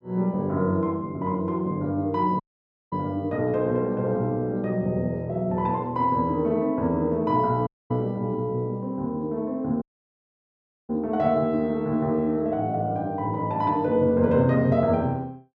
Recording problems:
dropout; at 2.5 s for 0.5 s, at 7.5 s and at 10 s for 1 s

